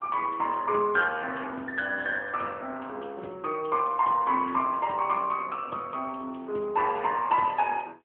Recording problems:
telephone audio; 280 Hz to 3.2 kHz, AMR-NB

